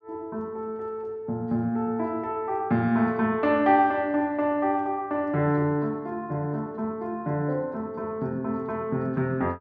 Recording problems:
none

